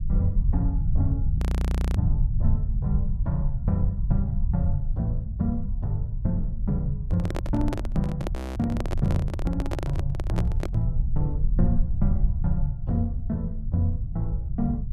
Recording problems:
rumble; below 82 Hz, SNR 0 dB
audio freezing; at 1.5 s for 0.5 s and at 8.5 s
handling noise; from 7 to 11 s; peak +1 dB vs average level

